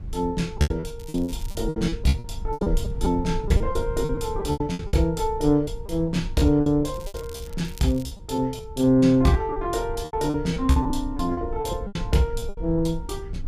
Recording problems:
low-frequency rumble; below 74 Hz, SNR 11 dB
packet loss; 16% of the sound replaced, filled with repeated pitch periods
crackle; at 1 s and from 7 to 8 s; loose cable, SNR 22 dB

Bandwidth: 15 kHz